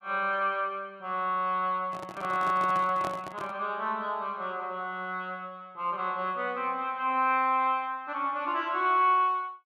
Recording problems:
microphone handling noise; from 2 to 3.5 s; peak -4 dB vs average level

